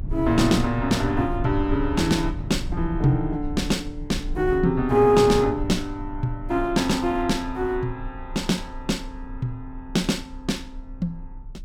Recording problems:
low-frequency rumble; below 74 Hz, SNR 11 dB

